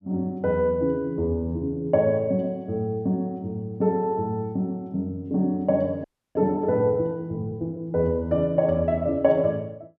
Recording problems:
frozen audio; at 6 s

